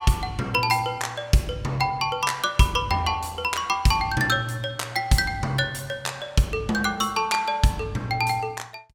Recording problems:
none

